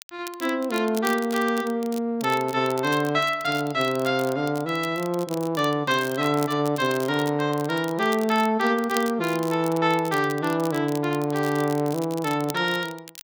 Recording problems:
crackling; vinyl, SNR 17 dB

